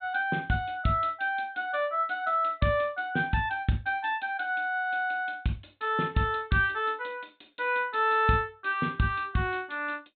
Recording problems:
low-pass filter; nothing above 4 kHz

